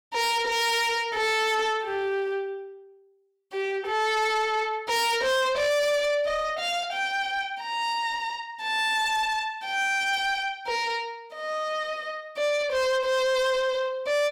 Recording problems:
distorted audio; soft clipping, signal-to-distortion ratio 8 dB

